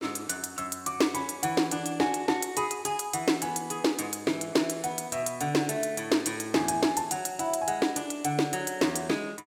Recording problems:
none

